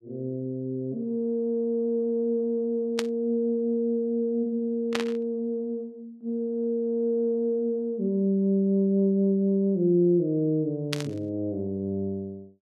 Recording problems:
burst of static; at 3 s, at 5 s and at 11 s; peak +1 dB vs average level

